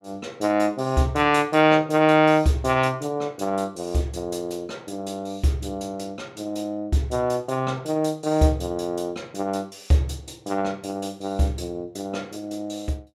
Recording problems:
none

